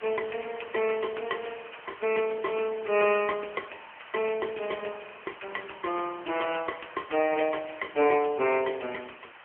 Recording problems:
telephone audio; 320 Hz to 3.1 kHz, AMR-NB
background hiss; SNR 18 dB

